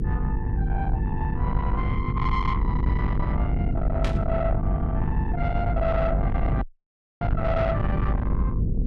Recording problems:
distortion; soft clipping, signal-to-distortion ratio 7 dB
electrical hum; 50 Hz, harmonics up to 500 Hz, SNR 1 dB
rumble; below 170 Hz, SNR -1 dB
static burst; at 4 s; peak 0 dB vs average level
audio cutting out; at 6.5 s for 0.5 s

